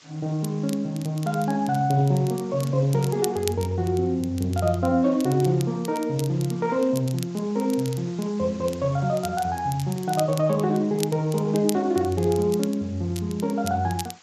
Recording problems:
codec artefacts; Speex, log-spectral distance 5 dB
hiss; slope +1 dB per octave, SNR 25 dB
crackling; vinyl, SNR 16 dB

